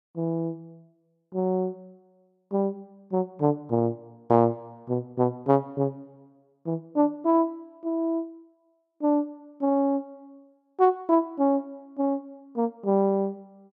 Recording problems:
none

